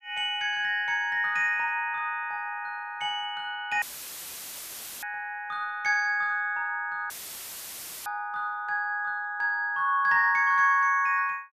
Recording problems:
audio cutting out; at 4 s for 1 s and at 7 s for 1 s; filled with static

